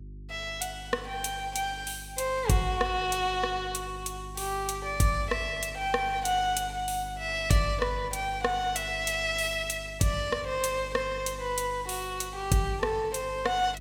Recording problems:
electrical hum; 50 Hz, harmonics up to 400 Hz, SNR 15 dB

